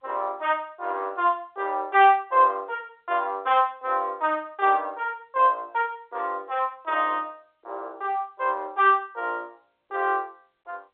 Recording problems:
telephone audio; 320 Hz to 3.7 kHz, G.711

